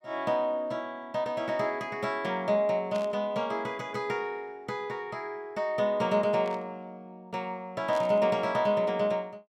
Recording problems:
burst of static; at 3 s, at 6.5 s and at 8 s; peak -10 dB vs average level

